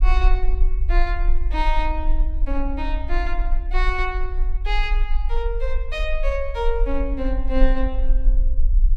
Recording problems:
rumble; below 40 Hz, strongest tone 20 Hz, SNR -3 dB

